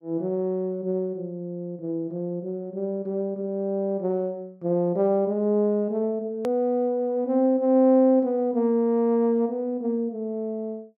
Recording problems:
hard cut with a click; at 6.5 s

